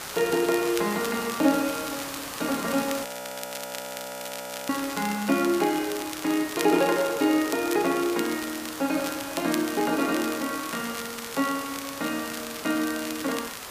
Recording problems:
hiss; SNR 10 dB
crackle; vinyl, SNR 12 dB
frozen audio; at 3 s for 1.5 s

